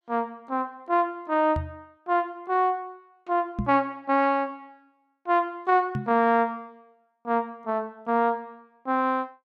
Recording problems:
microphone bump; at 1.5 s, at 3.5 s and at 6 s; peak +1 dB vs average level

